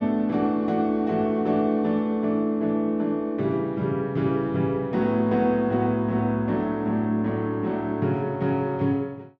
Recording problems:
none

